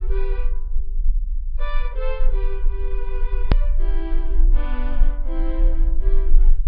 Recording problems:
treble missing; nothing above 5.5 kHz
low-frequency rumble; below 34 Hz, strongest tone 18 Hz, SNR -11 dB
edit click; at 3.5 s

